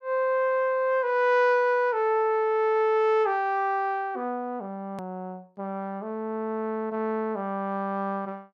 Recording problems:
hard cut with a click; at 5 s

